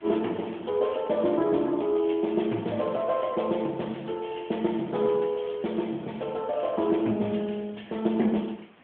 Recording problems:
phone line; 130 Hz to 3.4 kHz, AMR-NB
background hiss; SNR 27 dB

